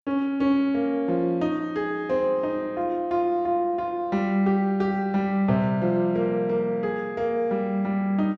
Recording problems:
none

